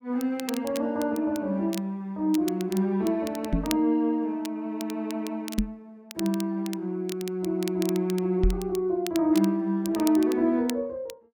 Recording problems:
crackling; vinyl, SNR 15 dB
microphone thump; at 3.5 s, at 5.5 s and at 8.5 s; peak +5 dB vs average level

